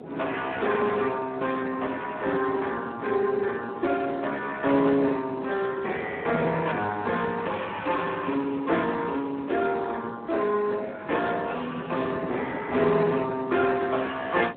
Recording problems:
telephone audio; 240 Hz to 3.6 kHz, Speex
wind on the microphone; below 530 Hz, SNR 14 dB

